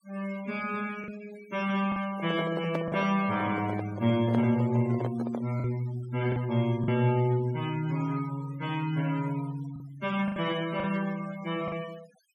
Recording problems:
denoising artefacts; signal-to-artefact ratio 18 dB
packet loss; 4% of the sound replaced, filled with the last packet
microphone handling noise; from 2 to 5.5 s; peak 0 dB vs average level

